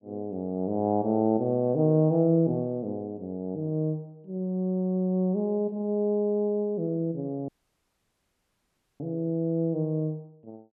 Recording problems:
dropout; at 7.5 s for 1.5 s

